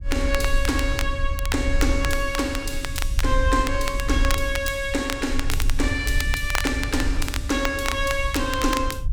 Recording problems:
low-frequency rumble; below 64 Hz, SNR 3 dB
crackle; vinyl, SNR 7 dB

